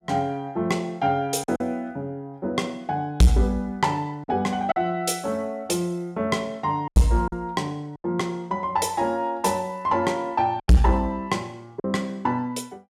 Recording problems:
distorted audio; soft clipping, signal-to-distortion ratio 8 dB
lost packets; 4% of the sound replaced, filled with silence

